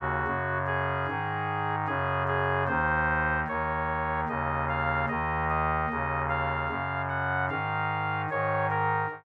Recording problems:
none

